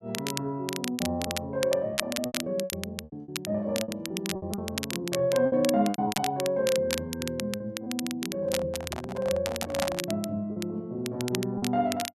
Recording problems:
crackle; vinyl, SNR 6 dB
packet loss; 10% of the sound replaced, filled with repeated pitch periods
microphone handling noise; from 8.5 to 10 s; peak +2 dB vs average level

